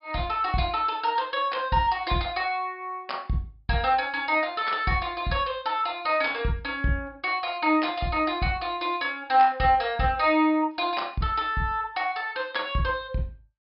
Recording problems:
treble cut off; nothing above 5.5 kHz

